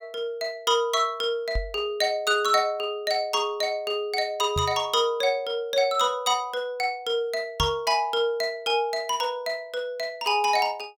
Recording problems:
knock on the microphone; at 1.5 s, at 4.5 s and at 7.5 s; peak -1 dB vs average level

